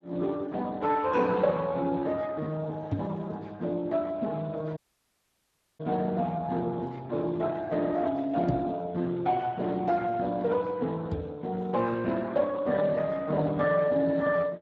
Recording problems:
lossy compression; Speex, log-spectral distance 3 dB
knock on the microphone; at 3 s, at 8.5 s and at 11 s; peak +2 dB vs average level
audio cutting out; at 5 s for 1 s

